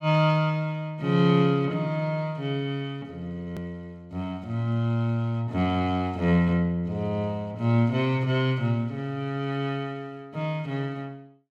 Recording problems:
click at an edit; at 3.5 s

